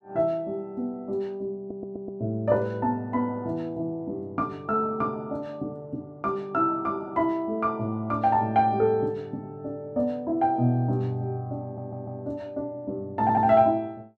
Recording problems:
stutter; at 1.5 s, at 12 s and at 13 s

